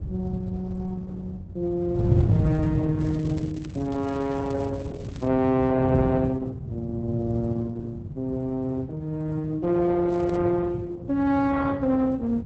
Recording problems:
lossy codec; Opus, log-spectral distance 2 dB
wind on the microphone; below 150 Hz, SNR 4 dB
crackling; from 3 to 5.5 s and at 10 s; loose cable, SNR 26 dB

